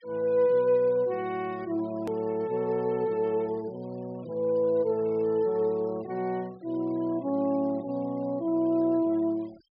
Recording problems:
low-pass filter; nothing above 5.3 kHz
noise reduction artefacts; signal-to-artefact ratio 27 dB
edit click; at 2 s

